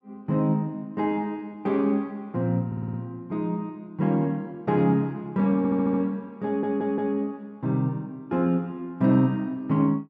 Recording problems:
stutter; at 2.5 s, at 5.5 s and at 6.5 s

